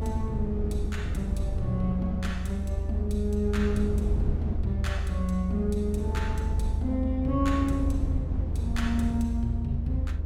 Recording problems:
rumble; below 80 Hz, SNR -1 dB

